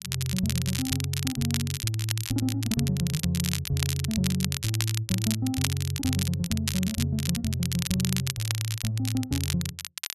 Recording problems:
crackle; vinyl, SNR 4 dB

